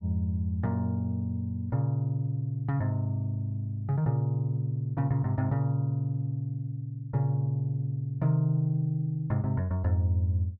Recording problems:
none

